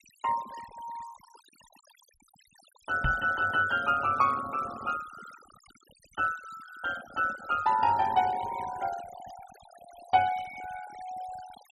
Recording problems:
denoising artefacts; signal-to-artefact ratio 19 dB
microphone bump; at 3 s; peak +1 dB vs average level

